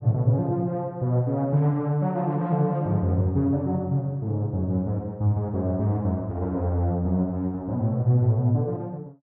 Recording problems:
none

